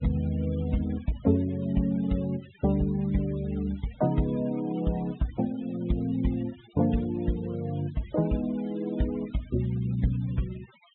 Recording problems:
treble cut off; nothing above 3.8 kHz
noise reduction artefacts; signal-to-artefact ratio 22 dB

